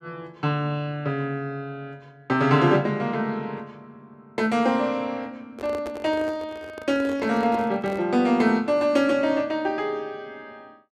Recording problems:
handling noise; from 5.5 to 8 s; peak -8 dB vs average level

